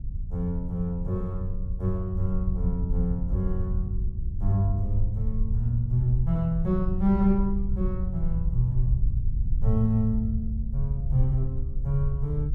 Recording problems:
rumble; below 66 Hz, SNR 2 dB

